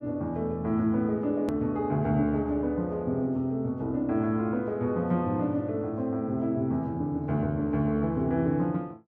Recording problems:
hard cut with a click; at 1.5 s

